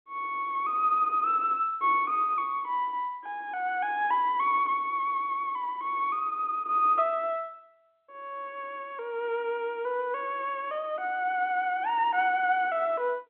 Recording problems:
phone line; 240 Hz to 3.3 kHz, G.711

